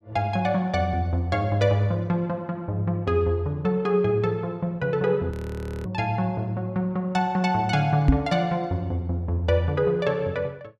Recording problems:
audio freezing; at 5.5 s for 0.5 s
knock on the microphone; at 8 s; peak +10 dB vs average level

